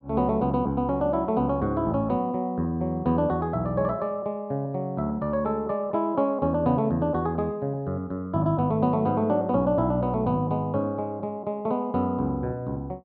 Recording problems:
none

